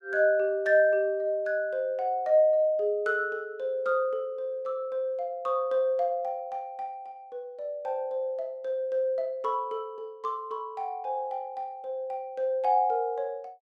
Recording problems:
none

